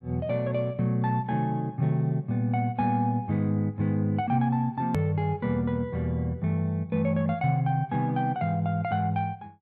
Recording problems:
click at an edit; at 5 s

